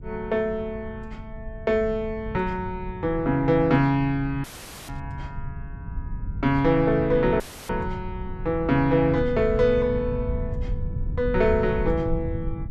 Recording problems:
low-frequency rumble; below 110 Hz, SNR 10 dB
dropout; at 4.5 s and at 7.5 s; filled with static
burst of static; at 5 s; peak -27 dB vs average level

